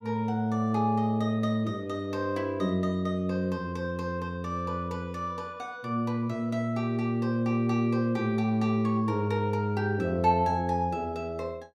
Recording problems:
none

